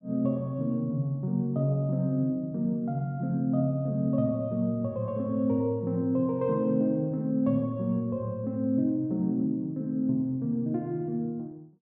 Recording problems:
none

